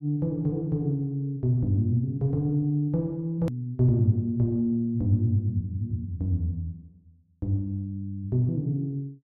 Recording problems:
click at an edit; at 3.5 s

